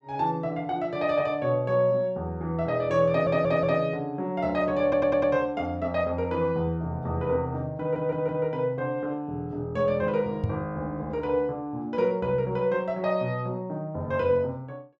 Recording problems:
stutter; at 3 s, at 5 s and at 8 s
knock on the microphone; at 10 s; peak +3 dB vs average level

